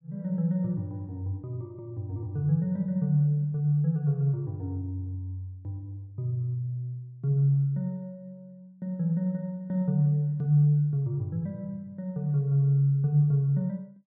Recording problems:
none

